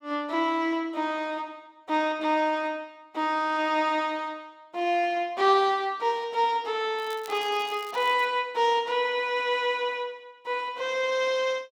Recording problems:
crackle; from 7 to 8.5 s; loose cable, SNR 21 dB

